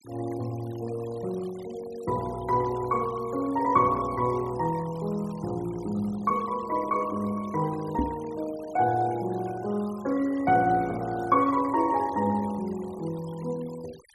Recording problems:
denoising artefacts; signal-to-artefact ratio 21 dB
microphone thump; at 8 s; peak +3 dB vs average level

